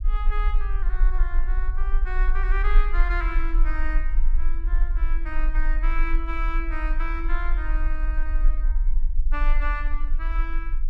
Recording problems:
rumble; below 36 Hz, strongest tone 20 Hz, SNR -7 dB

